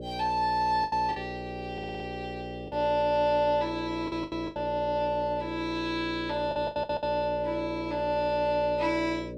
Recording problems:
electrical hum; 60 Hz, harmonics up to 600 Hz, SNR 10 dB
packet loss; 5% of the sound replaced, filled with the last packet
stutter; at 1.5 s and at 6.5 s

